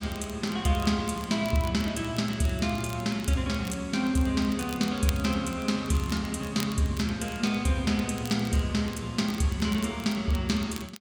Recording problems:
crackle; vinyl, SNR 18 dB

